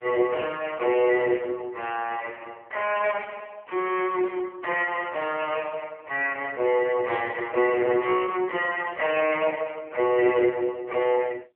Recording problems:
phone line; 300 Hz to 2.7 kHz, AMR-NB

